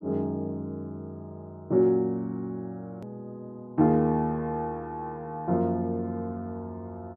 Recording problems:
hard cut with a click; at 3 s

